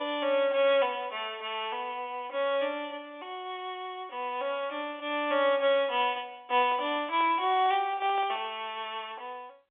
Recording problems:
telephone audio; 320 Hz to 3.5 kHz, G.711
handling noise; from 6.5 to 8.5 s; peak -11 dB vs average level

